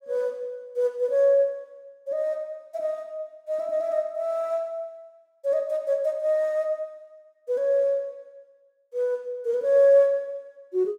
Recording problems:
none

